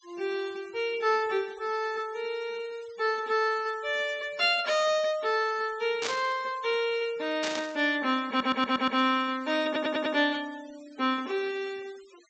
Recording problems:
treble missing; nothing above 8 kHz
noise reduction artefacts; signal-to-artefact ratio 22 dB
static burst; at 6 s and at 7.5 s; peak +1 dB vs average level
audio stuttering; at 8.5 s and at 9.5 s

